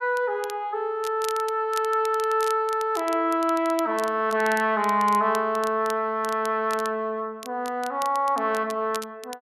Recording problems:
crackle; vinyl, SNR 17 dB

